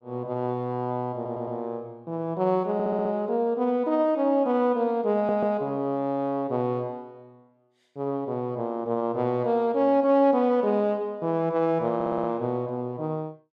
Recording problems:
stutter; 4 times, first at 1 s

